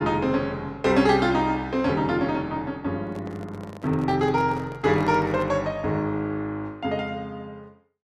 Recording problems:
handling noise; from 3 to 5.5 s; peak -11 dB vs average level

